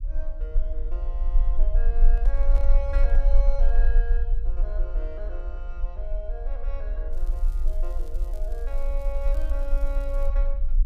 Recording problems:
rumble; below 38 Hz, strongest tone 24 Hz, SNR -12 dB
microphone handling noise; from 2 to 4 s; peak -2 dB vs average level
crackling; from 7 to 10 s; loose cable, SNR 19 dB

